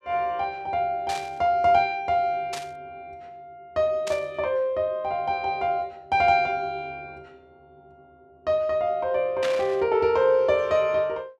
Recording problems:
static burst; 4 times, first at 1 s; peak -4 dB vs average level

